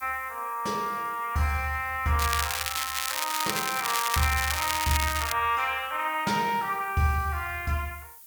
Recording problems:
background hiss; slope +1 dB per octave, SNR 18 dB
crackle; from 2 to 5.5 s; loose cable, SNR 2 dB

